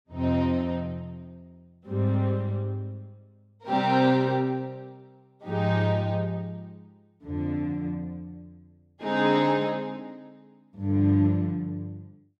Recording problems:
none

